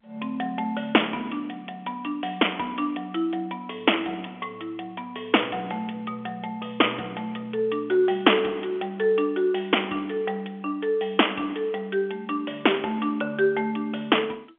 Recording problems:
phone line; 260 Hz to 3.4 kHz, G.711

